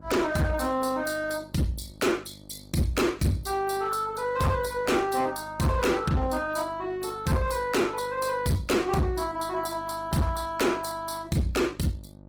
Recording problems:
lossy codec; Opus, log-spectral distance 4 dB, nothing above 19 kHz
distortion; hard clipping, uneven, signal-to-distortion ratio 7 dB
hum; 50 Hz, harmonics up to 950 Hz, SNR 22 dB

